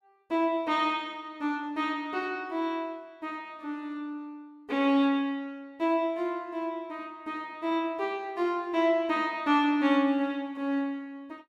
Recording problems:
none

